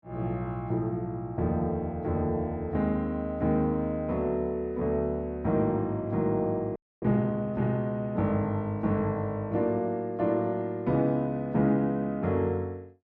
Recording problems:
audio freezing; at 7 s

